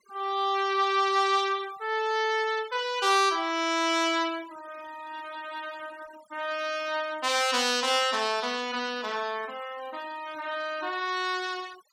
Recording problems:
denoising artefacts; signal-to-artefact ratio 20 dB

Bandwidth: 16.5 kHz